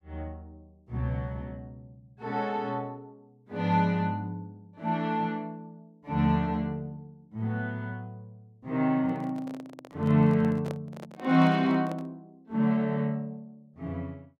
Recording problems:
handling noise; from 9 to 12 s; peak -6 dB vs average level

